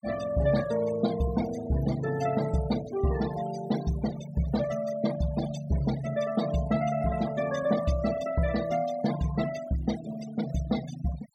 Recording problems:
noise reduction artefacts; signal-to-artefact ratio 12 dB

